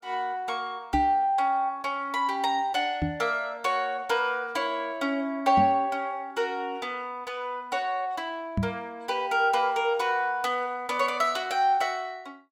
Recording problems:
knock on the microphone; 4 times, first at 1 s; peak +3 dB vs average level

